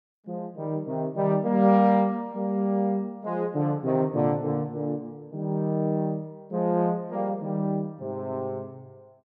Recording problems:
none

